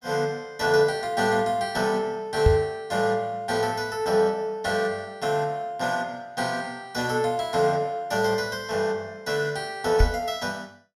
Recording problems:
knock on the microphone; at 2.5 s and at 10 s; peak +9 dB vs average level

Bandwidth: 15.5 kHz